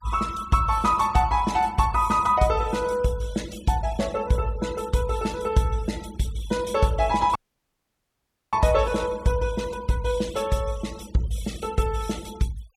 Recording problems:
noise reduction artefacts; signal-to-artefact ratio 20 dB
dropout; at 7.5 s for 1 s

